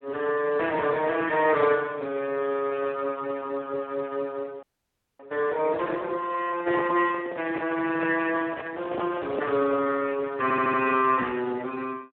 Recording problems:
telephone audio; 170 Hz to 3.1 kHz, Speex
audio freezing; at 4.5 s for 0.5 s
microphone handling noise; from 6.5 to 10 s; peak -3 dB vs average level
audio stuttering; at 10 s

